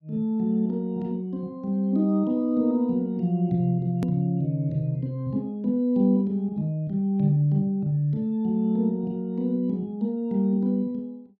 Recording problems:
click at an edit; at 4 s

